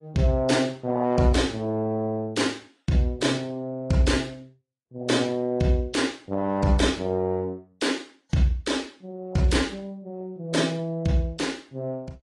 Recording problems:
codec artefacts; AAC, then AAC, log-spectral distance 3 dB, nothing above 10.1 kHz

